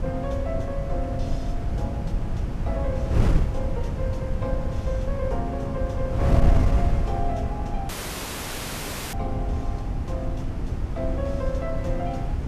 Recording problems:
wind noise; below 120 Hz, SNR -5 dB
audio cutting out; at 8 s for 1 s

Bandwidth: 14 kHz